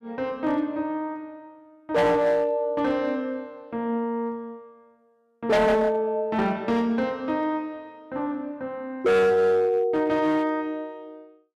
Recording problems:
distortion; hard clipping, signal-to-distortion ratio 7 dB

